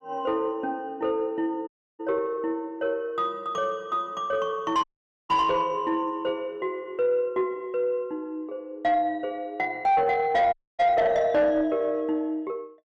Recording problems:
distortion; soft clipping, signal-to-distortion ratio 11 dB
audio cutting out; at 1.5 s, at 5 s and at 11 s

